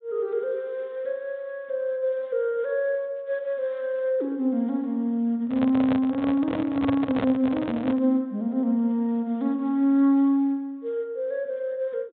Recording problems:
low-pass filter; nothing above 4 kHz
microphone handling noise; from 5.5 to 8 s; peak 0 dB vs average level

